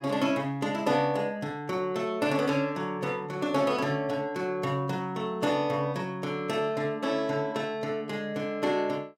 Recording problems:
none

